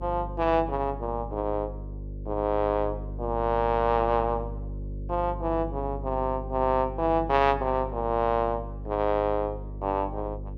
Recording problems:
hum; 50 Hz, harmonics up to 550 Hz, SNR 10 dB

